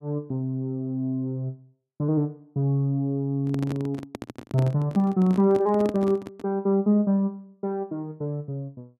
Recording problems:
microphone handling noise; from 3.5 to 6.5 s; peak -3 dB vs average level

